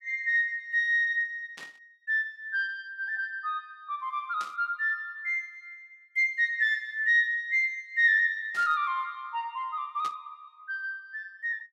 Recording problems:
burst of static; 4 times, first at 1.5 s; peak -11 dB vs average level

